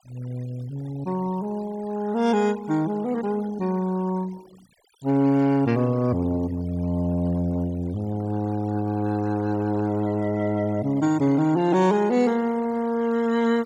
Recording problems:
denoising artefacts; signal-to-artefact ratio 23 dB

